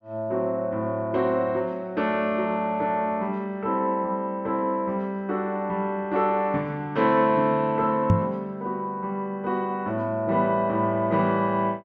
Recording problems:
knock on the microphone; at 8 s; peak +8 dB vs average level

